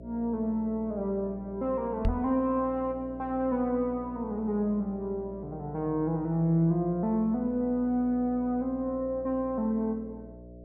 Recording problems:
electrical hum; 60 Hz, harmonics up to 660 Hz, SNR 16 dB
knock on the microphone; at 2 s; peak +4 dB vs average level

